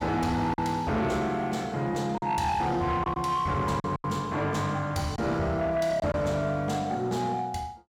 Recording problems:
distortion; soft clipping, signal-to-distortion ratio 12 dB
lost packets; 4% of the sound replaced, filled with silence

